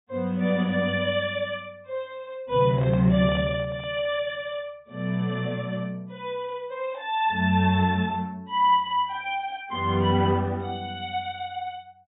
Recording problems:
treble missing; nothing above 4 kHz
handling noise; from 2.5 to 4 s; peak -10 dB vs average level

